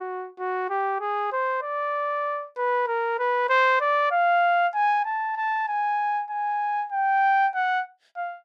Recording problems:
none

